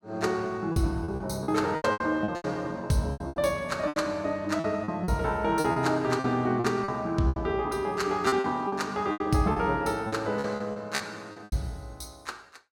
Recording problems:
lost packets; 13% of the sound replaced, filled with repeated pitch periods

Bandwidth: 17 kHz